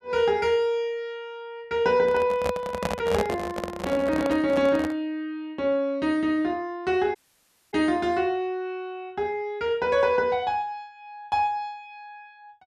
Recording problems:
handling noise; from 2 to 5 s; peak +2 dB vs average level
dropout; at 7 s for 0.5 s

